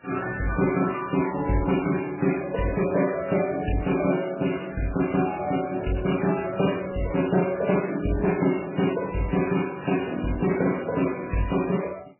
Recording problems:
codec artefacts; MP3, then MP3, log-spectral distance 7 dB, nothing above 2.5 kHz

